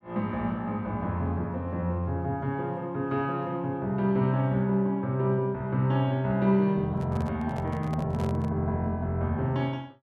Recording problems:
microphone handling noise; from 7 to 8.5 s; peak -7 dB vs average level

